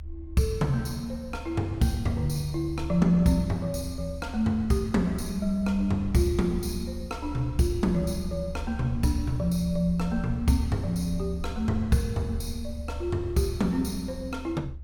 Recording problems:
low-frequency rumble; below 74 Hz, strongest tone 72 Hz, SNR 10 dB

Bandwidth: 17 kHz